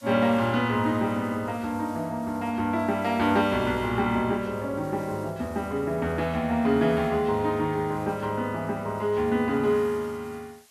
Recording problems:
hiss; slope +1 dB per octave, SNR 26 dB

